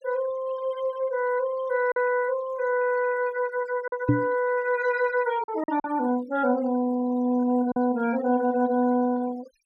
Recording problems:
noise reduction artefacts; signal-to-artefact ratio 20 dB
lost packets; 3% of the sound replaced, filled with silence
microphone bump; at 4 s; peak +7 dB vs average level

